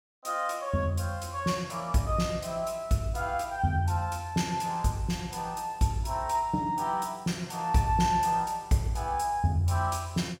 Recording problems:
none

